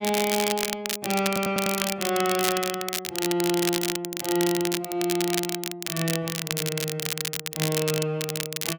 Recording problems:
crackling; vinyl, SNR 2 dB
audio stuttering; at 1.5 s

